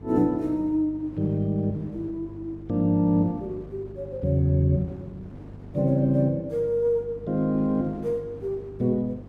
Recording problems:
electrical hum; 50 Hz, harmonics up to 450 Hz, SNR 18 dB
wind on the microphone; below 410 Hz, SNR 22 dB

